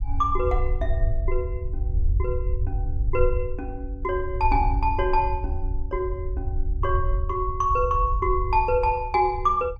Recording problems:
rumble; below 70 Hz, SNR 3 dB

